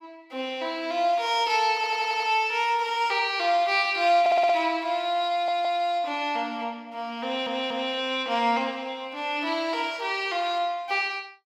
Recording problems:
audio stuttering; 4 times, first at 2 s

